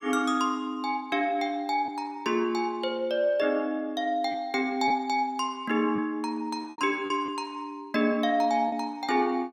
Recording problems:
packet loss; 3% of the sound replaced, filled with repeated pitch periods

